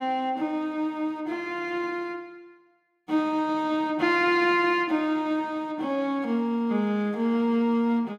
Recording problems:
none

